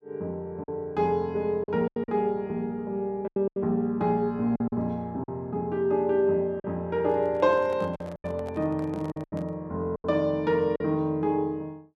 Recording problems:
lost packets; 7% of the sound replaced, filled with silence
handling noise; from 7 to 9.5 s; peak -11 dB vs average level

